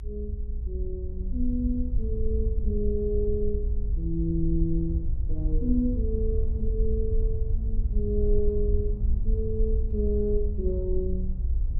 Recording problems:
rumble; below 60 Hz, SNR -2 dB

